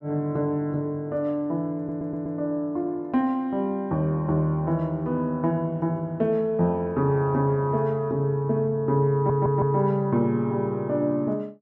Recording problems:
stutter; at 2 s and at 9 s

